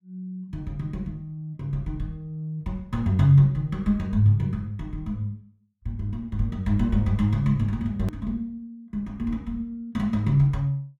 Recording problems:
click at an edit; at 8 s

